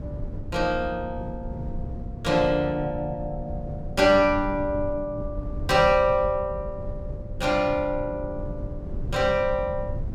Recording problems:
rumble; below 120 Hz, SNR 11 dB

